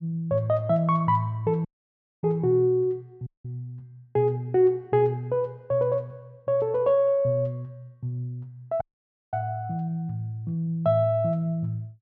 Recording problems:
audio cutting out; at 1.5 s for 0.5 s, at 3.5 s and at 9 s for 0.5 s

